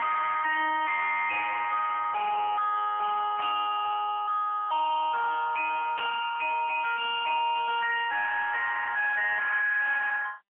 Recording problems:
phone line; 990 Hz to 2.1 kHz, AMR-NB, then MP3
distorted audio; soft clipping, signal-to-distortion ratio 7 dB
burst of static; at 3.5 s and at 6 s; peak -7 dB vs average level

